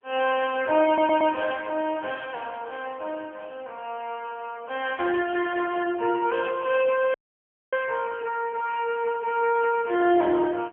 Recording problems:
phone line; 280 Hz to 3.3 kHz, AMR-NB
audio stuttering; at 1 s
dropout; at 7 s for 0.5 s

